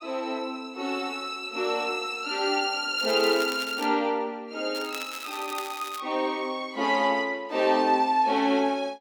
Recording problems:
crackling; at 3 s and from 4.5 to 6 s; loose cable, SNR 14 dB

